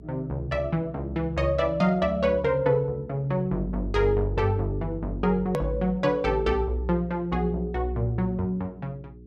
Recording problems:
hum; 60 Hz, harmonics up to 420 Hz, SNR 22 dB
edit click; at 5.5 s

